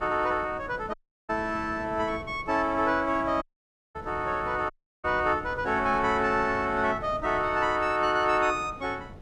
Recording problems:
wind noise; below 420 Hz, SNR 17 dB
audio cutting out; at 1 s, at 3.5 s for 0.5 s and at 4.5 s

